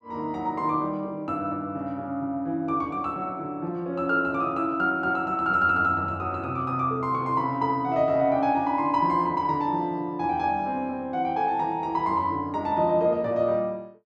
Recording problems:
none

